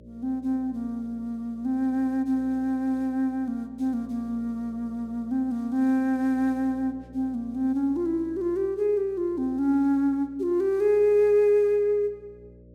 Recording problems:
hum; 60 Hz, harmonics up to 600 Hz, SNR 25 dB

